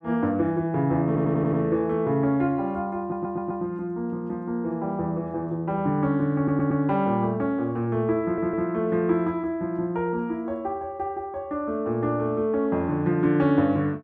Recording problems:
stutter; 4 times, first at 1 s

